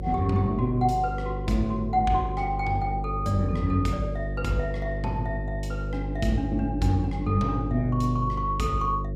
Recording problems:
mains hum; 50 Hz, harmonics up to 550 Hz, SNR 5 dB

